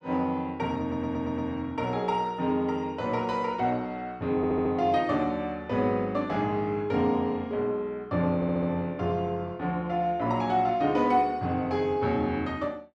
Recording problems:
audio stuttering; at 1 s, at 4.5 s and at 8.5 s

